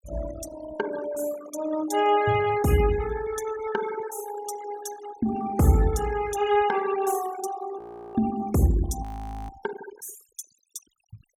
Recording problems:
denoising artefacts; signal-to-artefact ratio 14 dB
audio freezing; at 8 s and at 9 s

